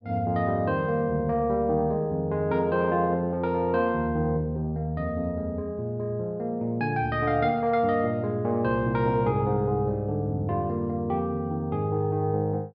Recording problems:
treble cut off; nothing above 5.5 kHz

